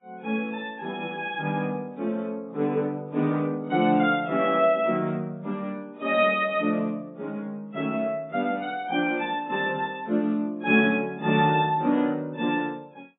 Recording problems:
lossy codec; AAC, then MP3, log-spectral distance 2 dB, nothing above 3.6 kHz

